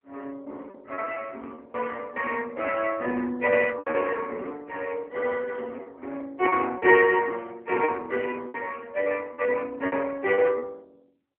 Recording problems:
telephone audio; 240 Hz to 2.8 kHz, AMR-NB
lost packets; 10% of the sound replaced, filled with repeated pitch periods

